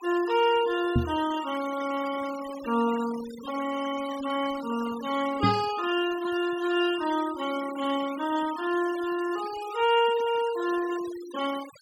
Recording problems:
denoising artefacts; signal-to-artefact ratio 15 dB
knock on the microphone; at 1 s and at 5.5 s; peak +7 dB vs average level

